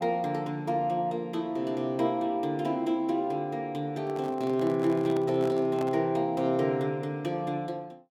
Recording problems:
handling noise; from 4 to 6 s; peak -6 dB vs average level

